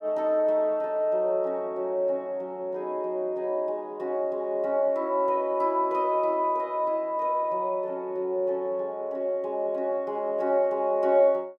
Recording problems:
none

